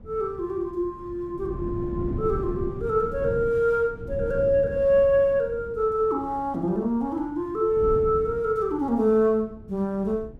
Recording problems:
wind on the microphone; below 220 Hz, SNR 13 dB

